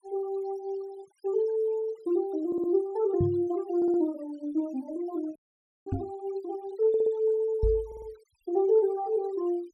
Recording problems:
denoising artefacts; signal-to-artefact ratio 27 dB
stutter; 4 times, first at 2.5 s
knock on the microphone; at 3 s, at 6 s and at 7.5 s; peak +3 dB vs average level
frozen audio; at 5.5 s for 0.5 s

